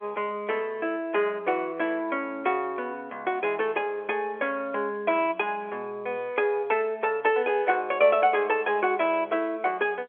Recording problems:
telephone audio; 340 Hz to 3.2 kHz, G.711

